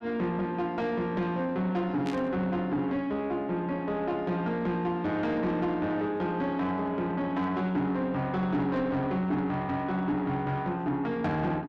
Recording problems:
distorted audio; soft clipping, signal-to-distortion ratio 12 dB
burst of static; at 2 s; peak -7 dB vs average level

